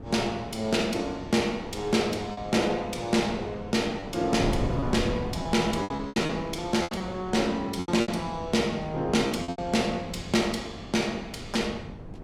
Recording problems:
mains hum; 50 Hz, harmonics up to 1.1 kHz, SNR 22 dB
wind noise; below 310 Hz, SNR 12 dB
lost packets; 6% of the sound replaced, filled with repeated pitch periods

